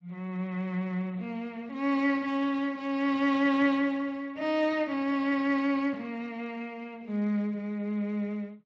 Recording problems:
codec artefacts; Speex, log-spectral distance 2 dB

